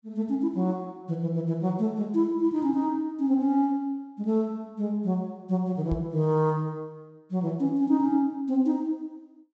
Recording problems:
treble missing; nothing above 8 kHz
microphone thump; at 6 s; peak -1 dB vs average level

